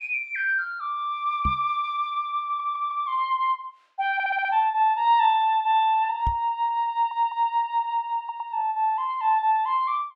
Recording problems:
knock on the microphone; at 1.5 s and at 6.5 s; peak -1 dB vs average level
audio stuttering; 4 times, first at 2.5 s

